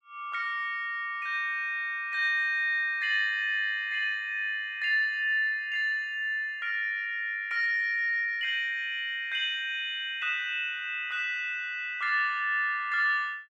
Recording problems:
none

